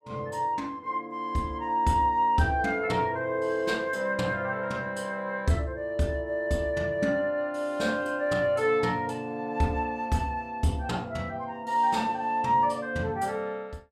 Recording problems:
none

